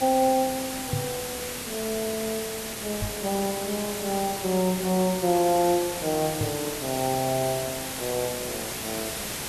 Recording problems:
hiss; slope -2 dB per octave, SNR 4 dB
microphone thump; at 1 s, at 3 s and at 6.5 s; peak +2 dB vs average level

